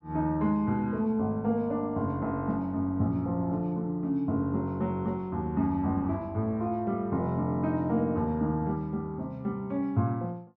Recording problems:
none

